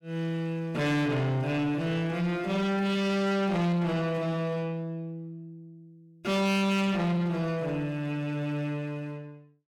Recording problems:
distortion; soft clipping, signal-to-distortion ratio 7 dB

